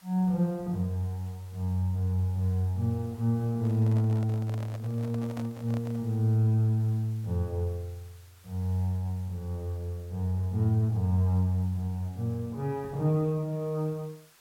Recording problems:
background hiss; SNR 29 dB
microphone handling noise; from 3.5 to 6 s; peak -10 dB vs average level

